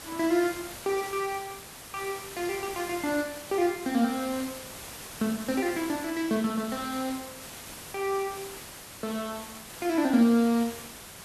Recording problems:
background hiss; slope -2 dB per octave, SNR 12 dB

